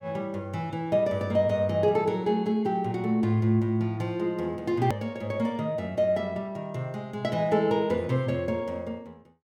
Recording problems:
edit click; at 5 s

